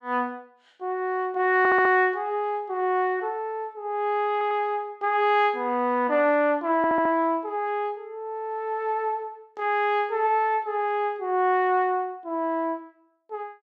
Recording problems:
audio stuttering; at 1.5 s, at 4.5 s and at 7 s

